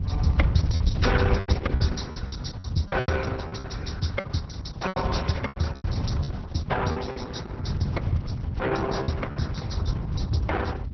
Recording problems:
treble cut off; nothing above 5.8 kHz
lossy codec; Opus, then Opus, log-spectral distance 3 dB
rumble; below 110 Hz, SNR -2 dB
lost packets; 9% of the sound replaced, filled with repeated pitch periods

